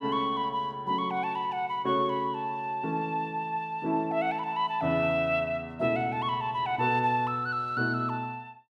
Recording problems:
none

